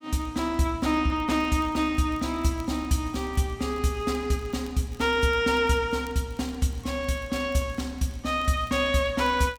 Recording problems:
crackle; vinyl, SNR 29 dB

